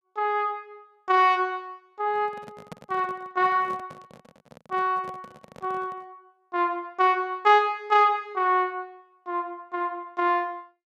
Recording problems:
microphone handling noise; from 2 to 6 s; peak -10 dB vs average level

